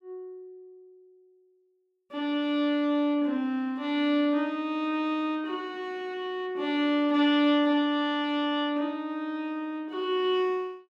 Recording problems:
none

